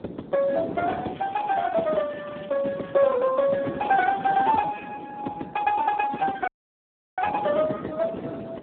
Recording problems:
phone line; 220 Hz to 2.5 kHz, Speex
wind on the microphone; below 470 Hz, SNR 12 dB
crackling; from 1 to 3 s and from 3.5 to 4.5 s; loose cable, SNR 27 dB
audio cutting out; at 6.5 s for 0.5 s

